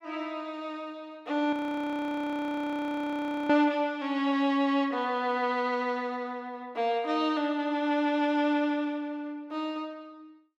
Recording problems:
audio freezing; at 1.5 s for 2 s

